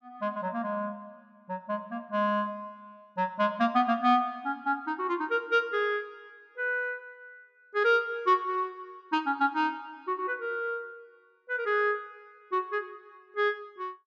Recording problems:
none

